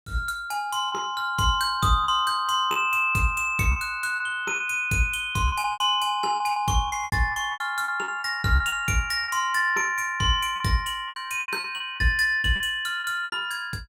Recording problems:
packet loss; 11% of the sound replaced, filled with repeated pitch periods

